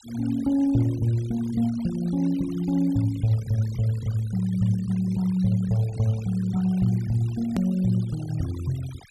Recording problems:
denoising artefacts; signal-to-artefact ratio 22 dB
hard cut with a click; at 7.5 s

